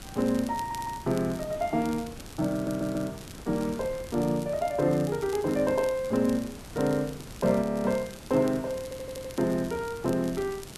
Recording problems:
background hiss; SNR 18 dB
wind noise; below 470 Hz, SNR 19 dB
crackle; vinyl, SNR 19 dB
stutter; at 0.5 s, at 2.5 s and at 9 s
frozen audio; at 7.5 s

